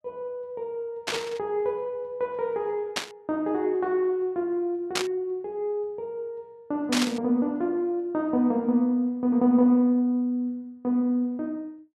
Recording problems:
burst of static; 4 times, first at 1 s; peak +4 dB vs average level

